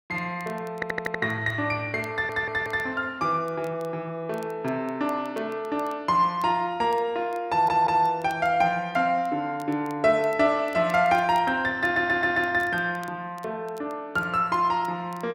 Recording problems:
crackling; vinyl, SNR 30 dB
stutter; 4 times, first at 1 s

